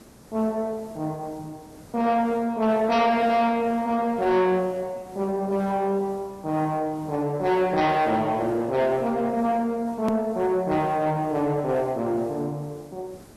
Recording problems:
lossy codec; MP2, log-spectral distance 2 dB, nothing above 13.1 kHz
distortion; soft clipping, signal-to-distortion ratio 11 dB
background hiss; SNR 24 dB
edit click; at 10 s

